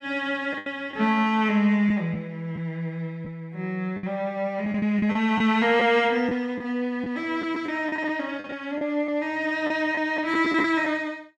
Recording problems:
packet loss; 7% of the sound replaced, filled with the last packet

